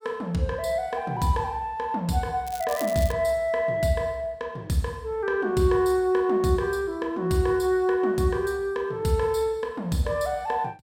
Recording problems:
crackling; at 2.5 s; loose cable, SNR 14 dB

